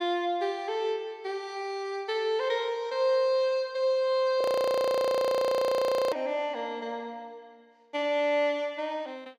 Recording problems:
frozen audio; at 4.5 s for 1.5 s

